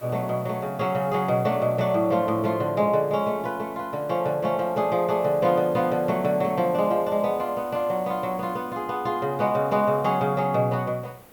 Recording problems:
background hiss; slope -6 dB per octave, SNR 23 dB

